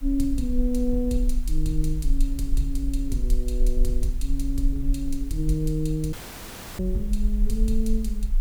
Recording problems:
background hiss; slope -3 dB per octave, SNR 23 dB
low-frequency rumble; below 38 Hz, strongest tone 22 Hz, SNR 1 dB
dropout; at 6 s for 0.5 s

